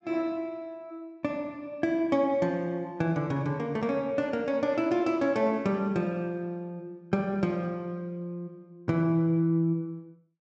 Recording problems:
low-pass filter; nothing above 8 kHz

